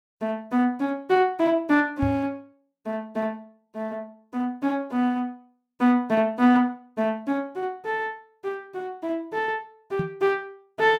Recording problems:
microphone thump; at 2 s and at 10 s; peak +1 dB vs average level

